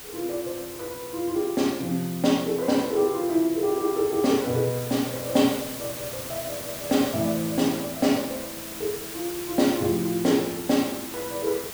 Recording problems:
background hiss; slope -1 dB per octave, SNR 10 dB

